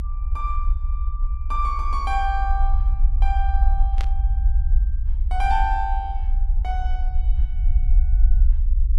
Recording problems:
low-frequency rumble; below 52 Hz, strongest tone 26 Hz, SNR -5 dB
static burst; at 4 s; peak -4 dB vs average level

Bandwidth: 14.5 kHz